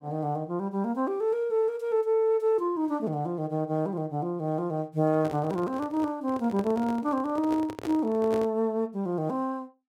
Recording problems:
microphone handling noise; from 5 to 8.5 s; peak -4 dB vs average level

